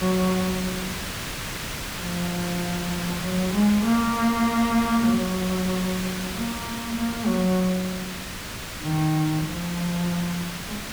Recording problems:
hiss; slope -1 dB per octave, SNR 6 dB

